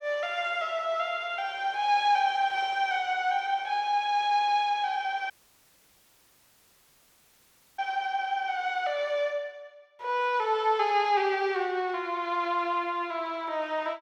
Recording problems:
audio cutting out; at 5.5 s for 2.5 s

